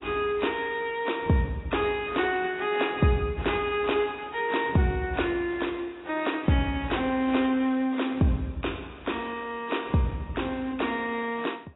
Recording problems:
lossy compression; AAC, log-spectral distance 4 dB, nothing above 3.8 kHz

